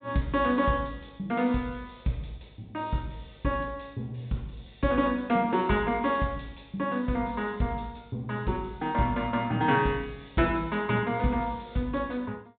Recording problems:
low-pass filter; nothing above 4 kHz

